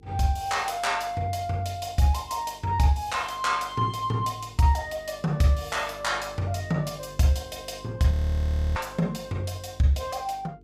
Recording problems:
hum; 50 Hz, harmonics up to 450 Hz, SNR 24 dB
audio freezing; at 8 s for 0.5 s

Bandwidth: 15.5 kHz